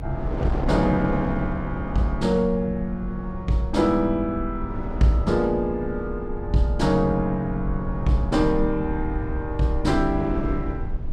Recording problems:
rumble; below 78 Hz, SNR 9 dB
wind on the microphone; below 390 Hz, SNR 11 dB

